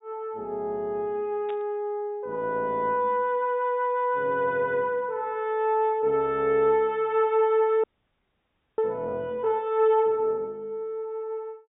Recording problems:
treble missing; nothing above 4 kHz
static burst; at 1.5 s; peak -15 dB vs average level
audio freezing; at 8 s for 1 s

